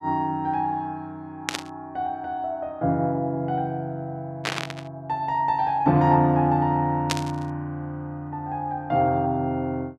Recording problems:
static burst; at 1.5 s, at 4.5 s and at 7 s; peak +4 dB vs average level

